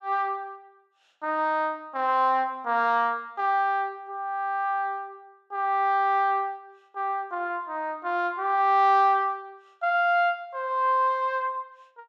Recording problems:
none

